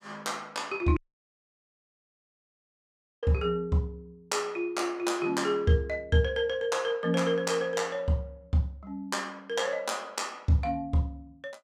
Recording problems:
audio cutting out; at 1 s for 2.5 s

